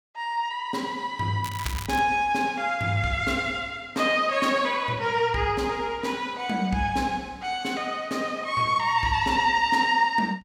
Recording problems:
crackle; at 1.5 s; loose cable, SNR 13 dB

